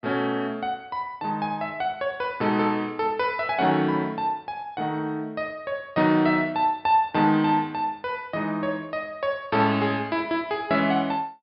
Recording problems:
low-pass filter; nothing above 5.5 kHz

